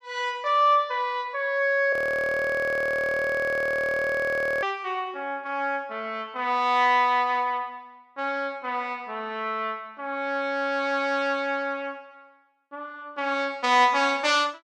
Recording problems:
frozen audio; at 2 s for 2.5 s

